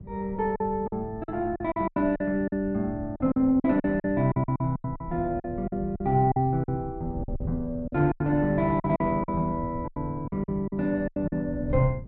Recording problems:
wind on the microphone; below 150 Hz, SNR 13 dB
lost packets; 14% of the sound replaced, filled with silence

